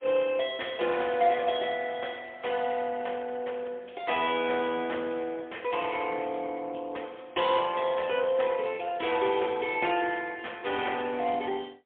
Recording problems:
telephone audio; 320 Hz to 3.4 kHz, AMR-NB, then MP3

